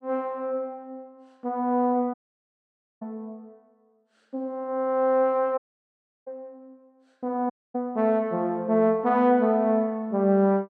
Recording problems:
dropout; at 2 s for 1 s, at 5.5 s for 0.5 s and at 7.5 s

